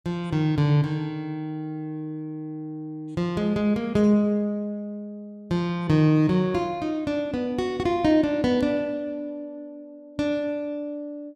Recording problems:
none

